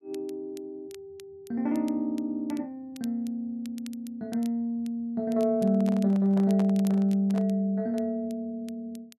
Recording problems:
crackle; vinyl, SNR 26 dB
microphone handling noise; from 5.5 to 7.5 s; peak -7 dB vs average level

